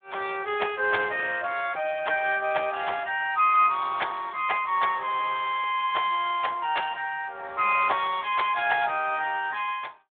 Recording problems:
phone line; 340 Hz to 3.6 kHz, Speex

